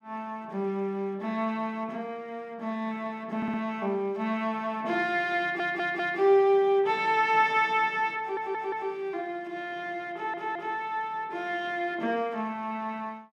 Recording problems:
audio stuttering; 4 times, first at 3.5 s

